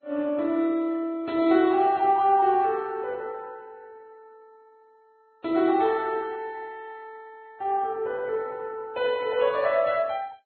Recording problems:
lossy compression; MP2, then Vorbis, log-spectral distance 2 dB, nothing above 3.7 kHz

